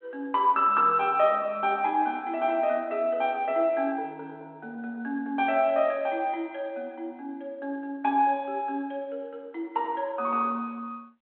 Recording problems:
phone line; 220 Hz to 3.4 kHz, G.726

